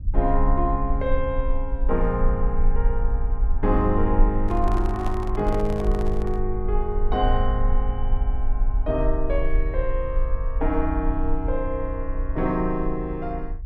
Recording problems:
rumble; below 46 Hz, strongest tone 20 Hz, SNR 1 dB
microphone handling noise; from 4.5 to 6.5 s; peak -4 dB vs average level

